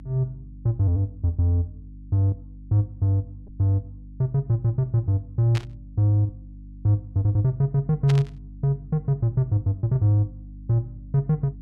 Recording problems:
hum; 50 Hz, harmonics up to 300 Hz, SNR 19 dB
lost packets; 1.6% of the sound replaced, filled with repeated pitch periods
static burst; at 5.5 s and at 8 s; peak -6 dB vs average level

